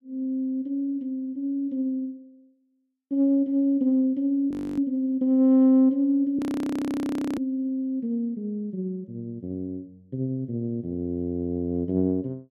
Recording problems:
frozen audio; at 4.5 s and at 6.5 s for 1 s

